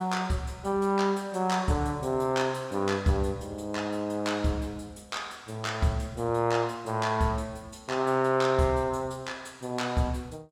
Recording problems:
none

